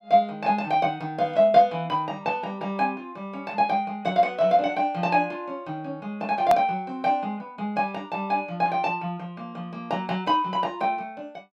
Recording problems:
edit click; at 6.5 s

